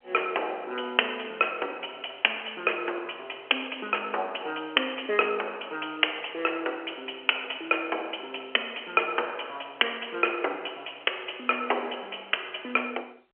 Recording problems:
telephone audio; 340 Hz to 3.2 kHz, G.711

